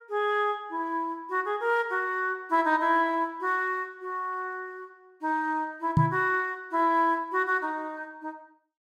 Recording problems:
knock on the microphone; at 6 s; peak +8 dB vs average level

